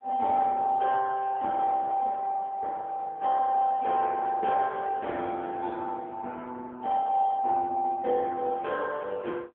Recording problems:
telephone audio; 280 Hz to 3.2 kHz, AMR-NB

